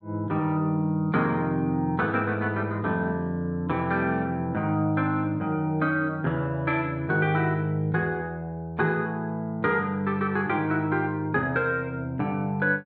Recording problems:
none

